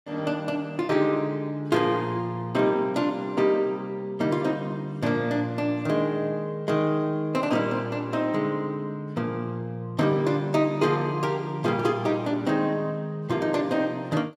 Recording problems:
none

